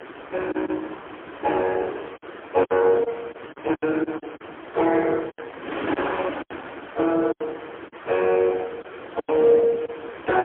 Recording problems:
telephone audio; 240 Hz to 3.3 kHz, AMR-NB, then MP3
wind on the microphone; below 1.6 kHz, SNR 13 dB
packet loss; 10% of the sound replaced, filled with silence

